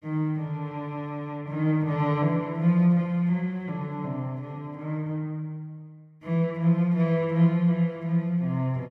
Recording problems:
none

